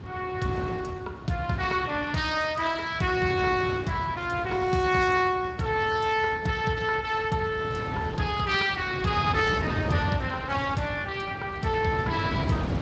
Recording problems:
lossy compression; Speex, log-spectral distance 4 dB
wind on the microphone; below 400 Hz, SNR 8 dB

